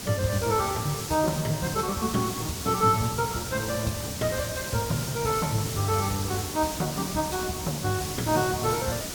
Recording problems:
codec artefacts; Opus, log-spectral distance 2 dB, nothing above 18.9 kHz
background hiss; SNR 6 dB

